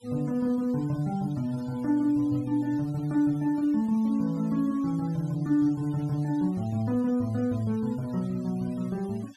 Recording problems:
noise reduction artefacts; signal-to-artefact ratio 26 dB

